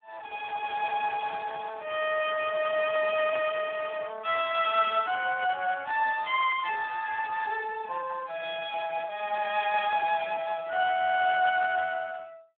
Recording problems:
phone line; 320 Hz to 3.5 kHz, Speex

